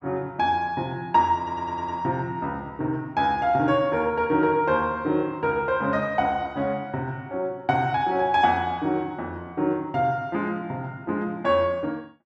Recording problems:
audio stuttering; at 1.5 s

